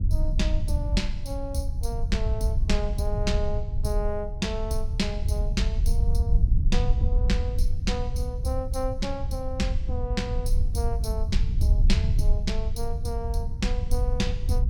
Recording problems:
low-frequency rumble; below 70 Hz, SNR -4 dB

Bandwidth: 17 kHz